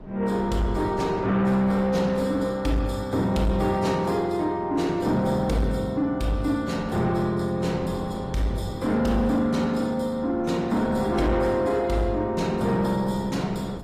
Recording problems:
codec artefacts; AAC, log-spectral distance 2 dB
distortion; soft clipping, signal-to-distortion ratio 12 dB
wind noise; below 460 Hz, SNR 15 dB

